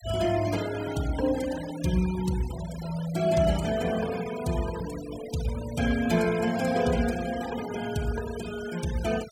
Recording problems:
noise reduction artefacts; signal-to-artefact ratio 13 dB

